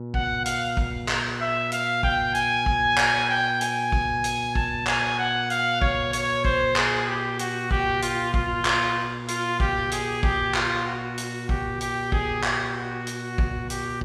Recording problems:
hum; 60 Hz, harmonics up to 960 Hz, SNR 11 dB

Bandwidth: 14.5 kHz